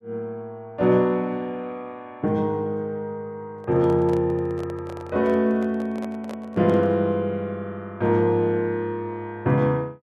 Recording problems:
microphone handling noise; from 3.5 to 7 s; peak -9 dB vs average level

